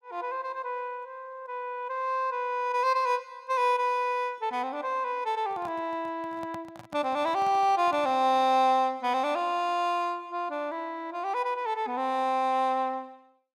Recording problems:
microphone handling noise; from 5.5 to 8.5 s; peak -11 dB vs average level

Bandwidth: 16.5 kHz